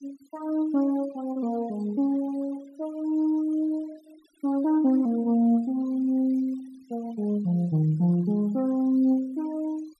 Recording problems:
noise reduction artefacts; signal-to-artefact ratio 26 dB

